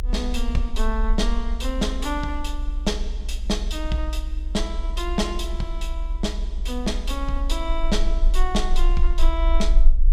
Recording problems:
hum; 50 Hz, harmonics up to 550 Hz, SNR 19 dB
rumble; below 38 Hz, strongest tone 22 Hz, SNR -1 dB

